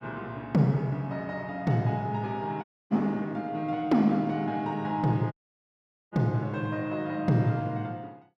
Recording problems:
audio cutting out; at 2.5 s and at 5.5 s for 1 s

